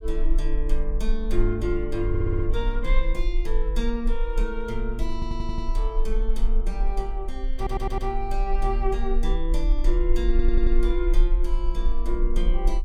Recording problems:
rumble; below 38 Hz, strongest tone 22 Hz, SNR -3 dB
audio stuttering; 4 times, first at 2 s

